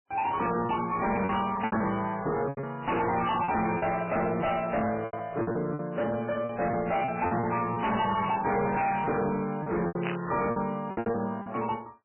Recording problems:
codec artefacts; MP3, log-spectral distance 5 dB, nothing above 2.7 kHz
distorted audio; hard clipping, signal-to-distortion ratio 6 dB
packet loss; 10% of the sound replaced, filled with repeated pitch periods
static burst; at 10 s; peak -1 dB vs average level

